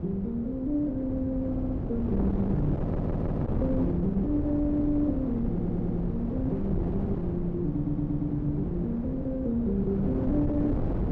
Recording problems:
wind noise; below 290 Hz, SNR 2 dB
audio stuttering; 4 times, first at 1.5 s

